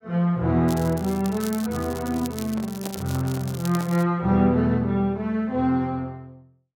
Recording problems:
crackle; from 0.5 to 4 s; loose cable, SNR 16 dB
handling noise; from 2.5 to 4 s; peak -9 dB vs average level

